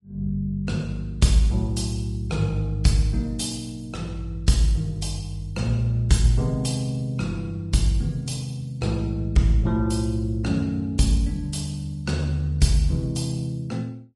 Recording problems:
lossy compression; Vorbis, log-spectral distance 2 dB, nothing above 10.1 kHz

